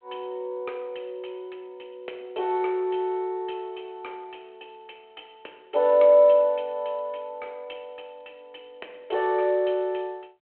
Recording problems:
telephone audio; 300 Hz to 3.5 kHz, G.726

